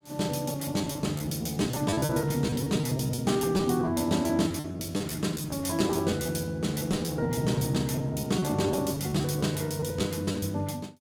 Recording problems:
packet loss; 15% of the sound replaced, filled with repeated pitch periods

